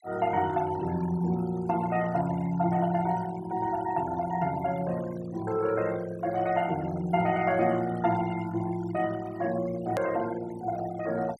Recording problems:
noise reduction artefacts; signal-to-artefact ratio 16 dB
hard cut with a click; at 10 s

